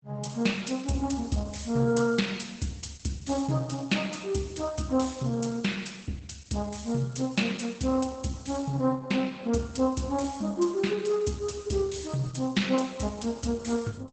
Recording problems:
codec artefacts; Opus, log-spectral distance 4 dB, nothing above 8 kHz

